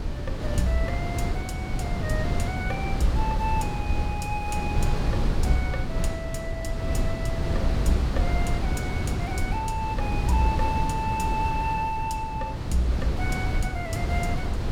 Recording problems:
wind on the microphone; below 160 Hz, SNR -2 dB

